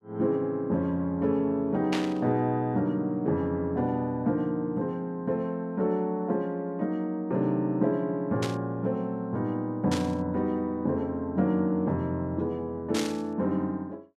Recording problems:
static burst; 4 times, first at 2 s; peak 0 dB vs average level

